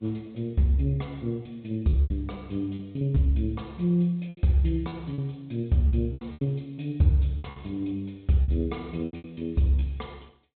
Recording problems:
low-pass filter; nothing above 3.7 kHz
codec artefacts; Vorbis, log-spectral distance 2 dB
packet loss; 10% of the sound replaced, filled with repeated pitch periods

